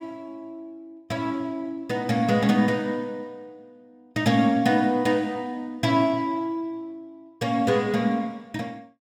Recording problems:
none

